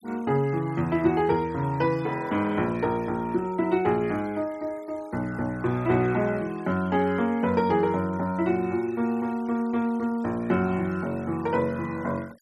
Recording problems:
noise reduction artefacts; signal-to-artefact ratio 25 dB

